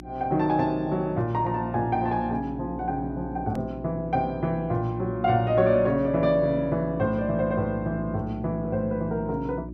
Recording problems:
hum; 60 Hz, harmonics up to 360 Hz, SNR 13 dB
edit click; at 3.5 s

